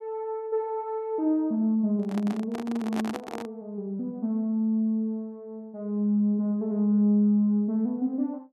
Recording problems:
microphone handling noise; from 2 to 3.5 s; peak -2 dB vs average level

